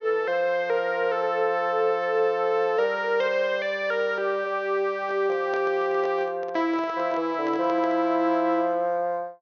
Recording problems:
treble cut off; nothing above 6.5 kHz
handling noise; from 5 to 8 s; peak -8 dB vs average level

